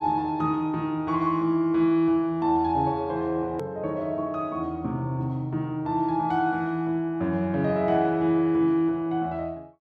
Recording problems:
edit click; at 3.5 s

